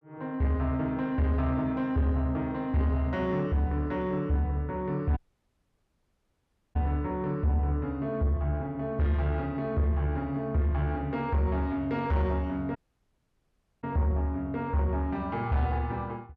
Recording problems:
distorted audio; soft clipping, signal-to-distortion ratio 12 dB
dropout; at 5 s for 1.5 s and at 13 s for 1 s

